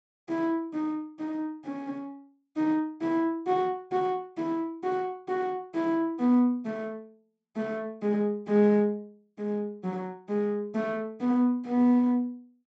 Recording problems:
low-pass filter; nothing above 8 kHz

